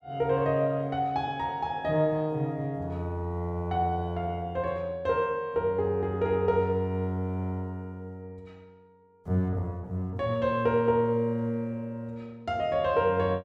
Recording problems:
none

